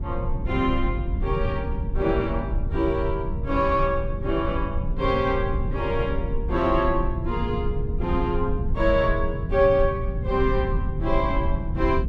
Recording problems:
rumble; below 100 Hz, SNR 4 dB
wind on the microphone; below 120 Hz, SNR 11 dB

